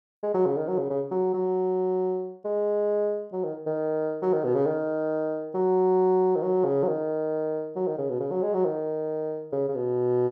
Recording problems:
none

